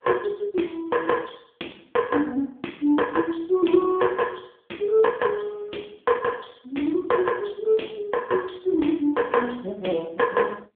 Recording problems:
phone line; 240 Hz to 3.4 kHz, AMR-NB

